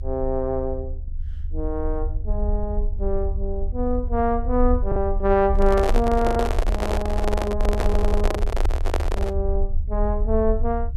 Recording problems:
rumble; below 64 Hz, strongest tone 26 Hz, SNR 2 dB
lost packets; 1.8% of the sound replaced, filled with the last packet
handling noise; from 5.5 to 9.5 s; peak +3 dB vs average level
stutter; at 8 s

